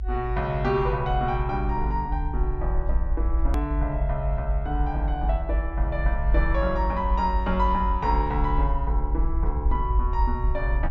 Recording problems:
low-pass filter; nothing above 8 kHz
low-frequency rumble; below 54 Hz, strongest tone 52 Hz, SNR 0 dB
click at an edit; at 3.5 s

